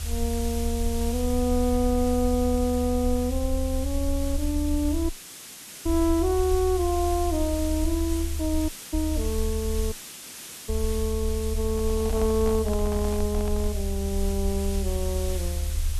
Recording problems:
background hiss; SNR 10 dB
rumble; below 76 Hz, SNR 3 dB
dropout; at 5 s for 1 s, at 8.5 s and at 10 s for 1 s
handling noise; from 12 to 14 s; peak -6 dB vs average level

